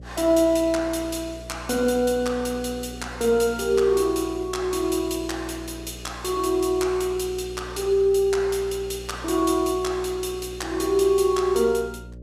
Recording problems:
hum; 60 Hz, harmonics up to 600 Hz, SNR 17 dB

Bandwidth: 15.5 kHz